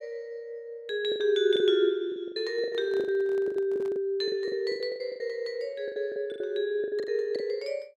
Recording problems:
lost packets; 16% of the sound replaced, filled with the last packet
microphone handling noise; from 2.5 to 4 s; peak -16 dB vs average level

